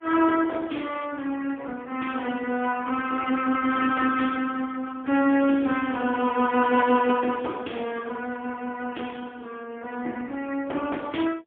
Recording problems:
phone line; 240 Hz to 3.3 kHz, AMR-NB, then MP3

